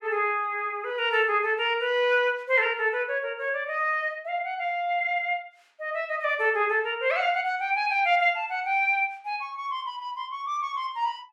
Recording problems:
none

